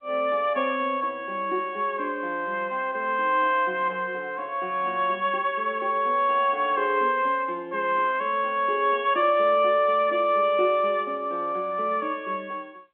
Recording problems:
telephone audio; 240 Hz to 3.5 kHz, G.711

